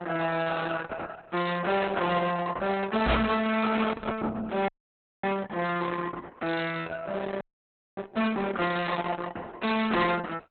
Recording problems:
codec artefacts; Opus, log-spectral distance 5 dB, nothing above 4 kHz
distortion; hard clipping, signal-to-distortion ratio 8 dB
knock on the microphone; at 3 s; peak +8 dB vs average level
frozen audio; at 4.5 s for 0.5 s and at 7.5 s for 0.5 s

